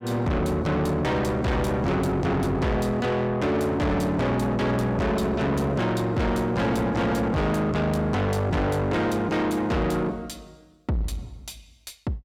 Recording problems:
distortion; soft clipping, signal-to-distortion ratio 6 dB

